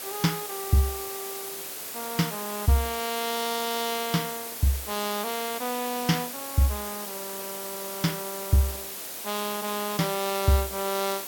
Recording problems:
background hiss; slope -1 dB per octave, SNR 5 dB

